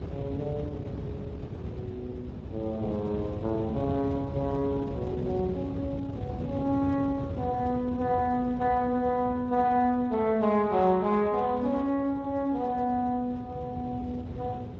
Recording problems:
lossy codec; Speex, then MP3, log-spectral distance 2 dB
wind on the microphone; below 310 Hz, SNR 9 dB

